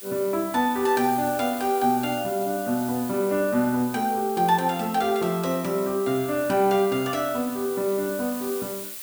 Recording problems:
hiss; slope +2 dB per octave, SNR 12 dB

